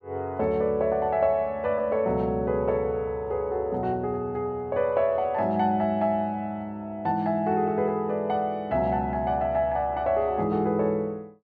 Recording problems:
none

